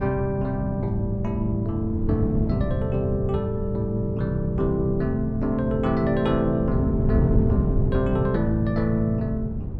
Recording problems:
wind on the microphone; below 170 Hz, SNR 3 dB

